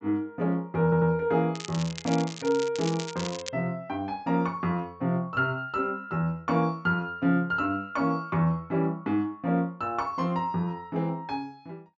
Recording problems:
treble missing; nothing above 8 kHz
stutter; at 1 s
crackle; from 1.5 to 3.5 s; loose cable, SNR 11 dB

